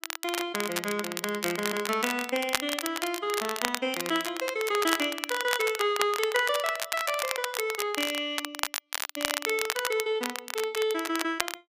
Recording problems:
crackling; vinyl, SNR 4 dB

